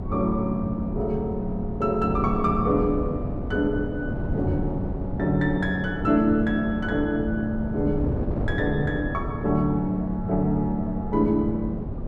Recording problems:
wind on the microphone; below 260 Hz, SNR 6 dB

